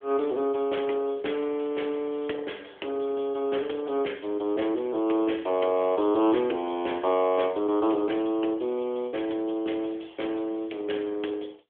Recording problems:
telephone audio; 260 Hz to 3.4 kHz, AMR-NB

